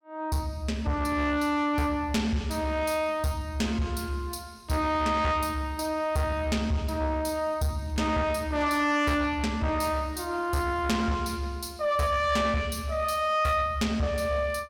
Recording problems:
distortion; soft clipping, signal-to-distortion ratio 11 dB

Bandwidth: 17 kHz